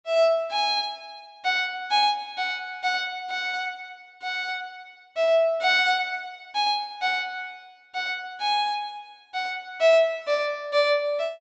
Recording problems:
low-pass filter; nothing above 8 kHz

